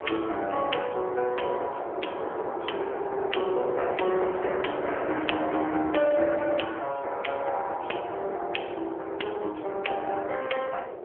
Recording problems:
phone line; 300 Hz to 3.3 kHz, AMR-NB
wind on the microphone; below 770 Hz, SNR 8 dB

